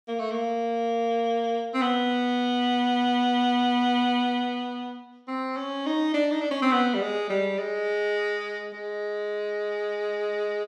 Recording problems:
none

